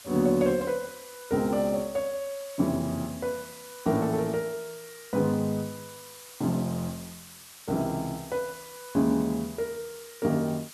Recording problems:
background hiss; SNR 16 dB

